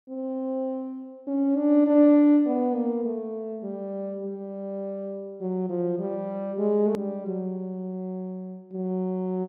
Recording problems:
hard cut with a click; at 7 s

